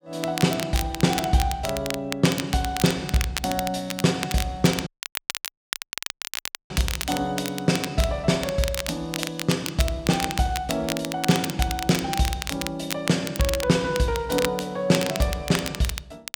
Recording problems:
crackle; vinyl, SNR 7 dB
audio cutting out; at 5 s for 2 s

